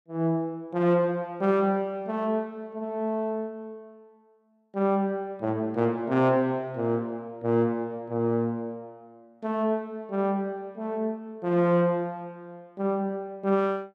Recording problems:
none

